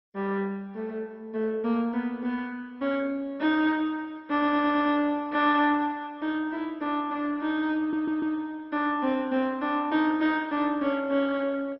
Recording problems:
codec artefacts; MP2, log-spectral distance 3 dB, nothing above 5.3 kHz
audio stuttering; at 4.5 s and at 8 s

